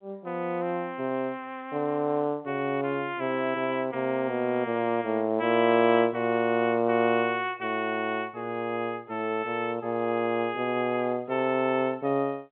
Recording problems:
phone line; 150 Hz to 3.5 kHz, G.711

